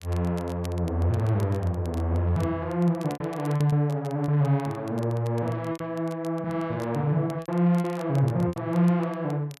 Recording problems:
crackle; vinyl, SNR 25 dB
packet loss; 5% of the sound replaced, filled with repeated pitch periods

